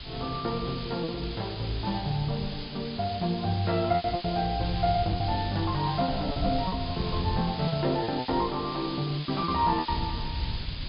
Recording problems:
treble cut off; nothing above 5 kHz
hiss; SNR 10 dB
wind noise; below 120 Hz, SNR 11 dB
lost packets; 7% of the sound replaced, filled with repeated pitch periods

